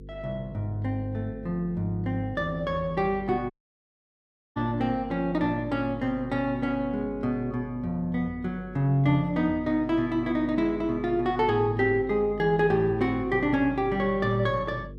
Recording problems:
electrical hum; 50 Hz, harmonics up to 500 Hz, SNR 17 dB
audio cutting out; at 3.5 s for 1 s

